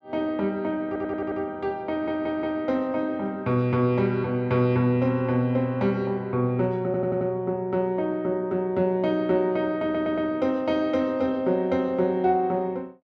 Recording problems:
stutter; 4 times, first at 1 s

